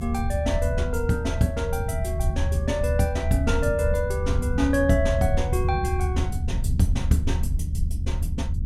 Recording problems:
rumble; below 88 Hz, SNR 0 dB

